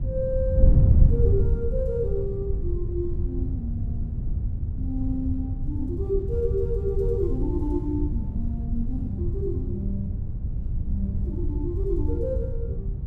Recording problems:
wind on the microphone; below 100 Hz, SNR -4 dB

